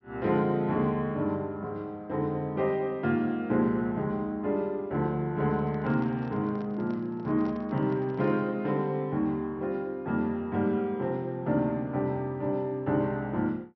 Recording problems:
treble cut off; nothing above 5.8 kHz
microphone handling noise; from 5.5 to 8.5 s; peak -10 dB vs average level

